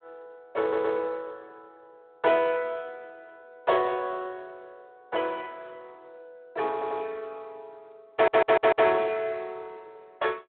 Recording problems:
phone line; 280 Hz to 3.7 kHz, Speex
audio stuttering; at 0.5 s, at 6.5 s and at 8 s

